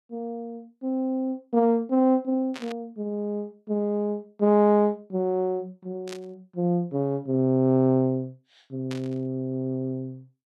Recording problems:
burst of static; at 2.5 s, at 6 s and at 9 s; peak -9 dB vs average level

